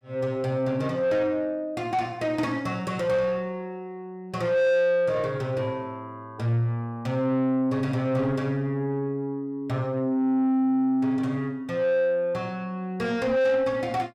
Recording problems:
distortion; soft clipping, signal-to-distortion ratio 10 dB

